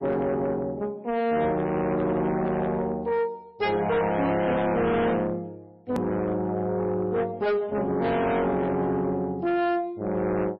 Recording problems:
lossy compression; MP3, log-spectral distance 2 dB, nothing above 13.1 kHz
distortion; soft clipping, signal-to-distortion ratio 8 dB
edit click; at 6 s

